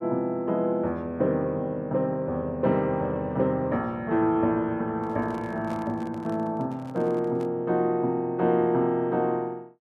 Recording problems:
microphone handling noise; from 5 to 7.5 s; peak -10 dB vs average level

